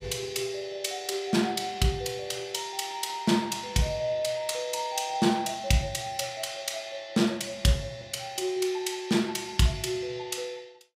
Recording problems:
none

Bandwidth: 15.5 kHz